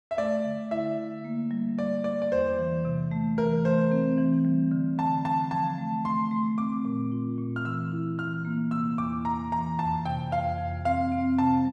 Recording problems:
none

